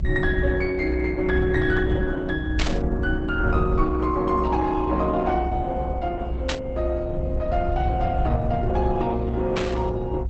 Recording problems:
codec artefacts; Opus, log-spectral distance 3 dB, nothing above 8 kHz
low-frequency rumble; below 92 Hz, SNR 4 dB
static burst; at 2.5 s, at 6.5 s and at 9.5 s; peak +3 dB vs average level

